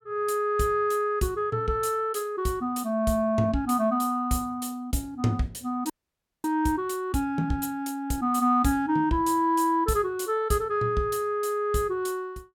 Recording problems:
frozen audio; at 6 s for 0.5 s

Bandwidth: 17 kHz